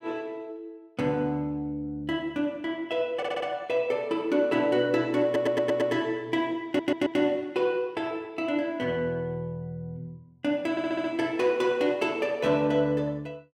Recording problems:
stutter; 4 times, first at 3 s

